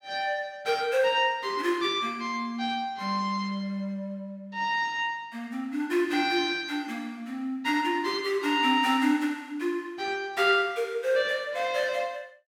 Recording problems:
none

